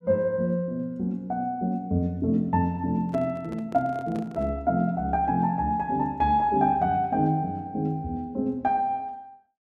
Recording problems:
microphone handling noise; from 3 to 4.5 s; peak -9 dB vs average level

